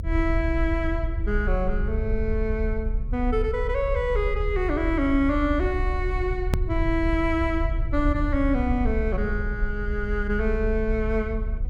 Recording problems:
electrical hum; 50 Hz, harmonics up to 550 Hz, SNR 22 dB
rumble; below 66 Hz, strongest tone 36 Hz, SNR 2 dB
edit click; at 6.5 s

